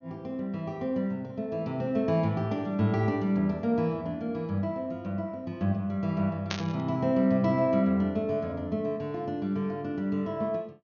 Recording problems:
treble missing; nothing above 6.7 kHz
burst of static; at 6.5 s; peak +1 dB vs average level

